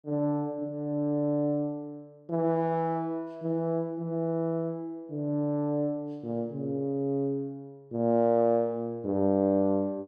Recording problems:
none

